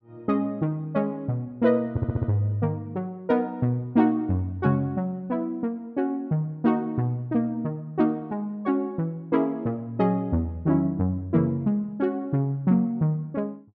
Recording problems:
audio stuttering; at 2 s

